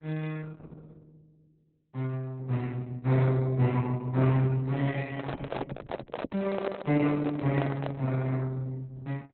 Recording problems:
codec artefacts; Opus, log-spectral distance 4 dB, nothing above 4 kHz
handling noise; from 5 to 8 s; peak +2 dB vs average level

